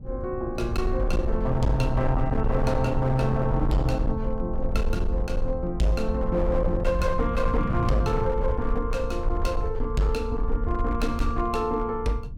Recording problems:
distortion; hard clipping, signal-to-distortion ratio 11 dB
rumble; below 62 Hz, SNR 4 dB
wind noise; below 170 Hz, SNR 12 dB

